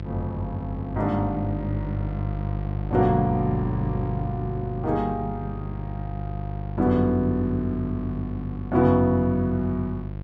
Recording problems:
hum; 50 Hz, harmonics up to 700 Hz, SNR 7 dB

